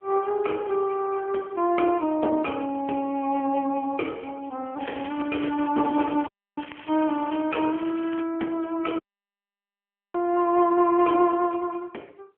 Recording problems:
telephone audio; 240 Hz to 3.7 kHz, AMR-NB
crackling; from 5 to 8 s; loose cable, SNR 18 dB
audio cutting out; at 6.5 s and at 9 s for 1 s

